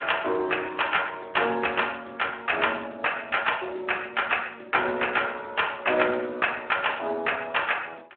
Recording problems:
telephone audio; 320 Hz to 3.4 kHz, Speex

